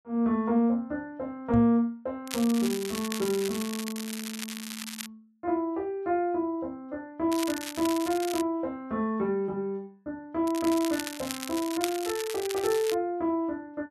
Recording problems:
microphone bump; at 1.5 s; peak +2 dB vs average level
crackling; from 2.5 to 5 s, from 7.5 to 8.5 s and from 10 to 13 s; loose cable, SNR 8 dB

